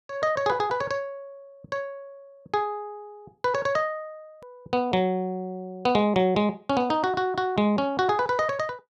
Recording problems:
edit click; at 4.5 s

